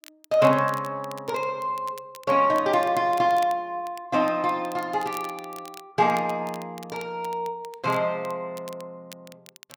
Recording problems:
crackling; vinyl, SNR 22 dB

